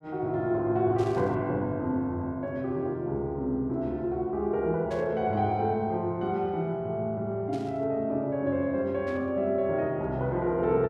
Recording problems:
burst of static; 4 times, first at 1 s; peak -15 dB vs average level

